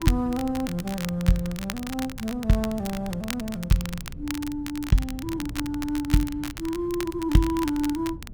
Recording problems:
wind on the microphone; below 150 Hz, SNR 15 dB
crackle; vinyl, SNR 11 dB

